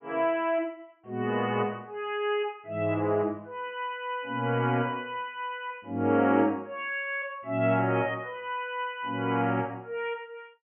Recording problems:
treble missing; nothing above 3.2 kHz

